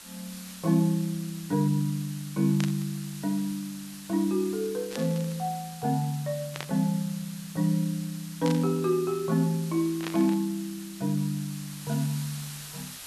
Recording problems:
hiss; slope +2 dB per octave, SNR 14 dB
burst of static; 5 times, first at 2.5 s; peak -3 dB vs average level

